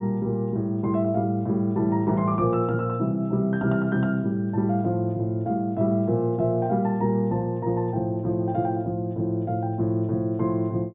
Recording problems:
treble missing; nothing above 4 kHz

